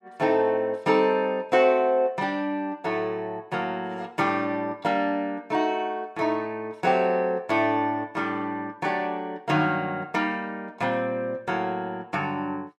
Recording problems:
none

